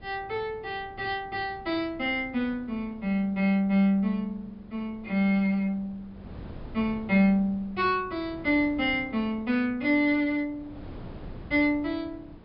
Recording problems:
treble missing; nothing above 5.5 kHz
wind on the microphone; below 340 Hz, SNR 20 dB

